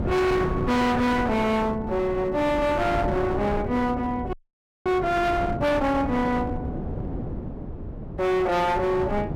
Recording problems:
distortion; hard clipping, signal-to-distortion ratio 7 dB
wind on the microphone; below 390 Hz, SNR 8 dB
audio freezing; at 4.5 s for 0.5 s

